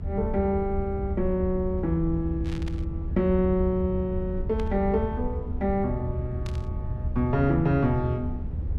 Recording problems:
low-frequency rumble; below 90 Hz, SNR 5 dB
burst of static; at 2.5 s, at 4.5 s and at 6.5 s; peak -11 dB vs average level

